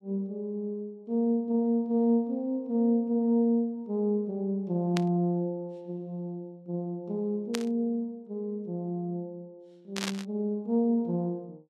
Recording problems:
static burst; at 5 s, at 7.5 s and at 10 s; peak 0 dB vs average level

